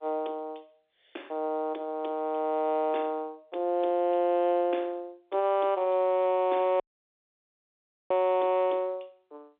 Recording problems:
telephone audio; 260 Hz to 3.7 kHz, G.711
dropout; at 7 s for 1.5 s

